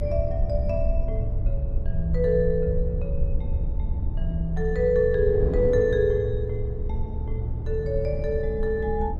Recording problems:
low-frequency rumble; below 68 Hz, SNR 4 dB
wind noise; below 290 Hz, SNR 11 dB

